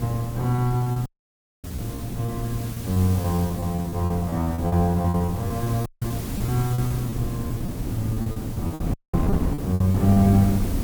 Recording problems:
hiss; slope -1 dB per octave, SNR 16 dB
wind noise; below 250 Hz, SNR 6 dB
packet loss; 13% of the sound replaced, filled with repeated pitch periods
dropout; at 1 s for 0.5 s, at 6 s and at 9 s

